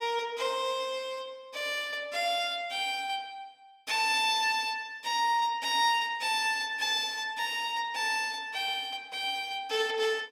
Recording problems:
none

